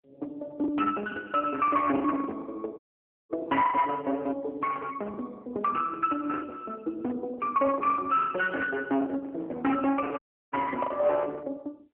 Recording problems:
phone line; 300 Hz to 2.3 kHz, AMR-NB
distorted audio; hard clipping, signal-to-distortion ratio 11 dB
packet loss; 12% of the sound replaced, filled with the last packet
audio cutting out; at 3 s for 0.5 s and at 10 s

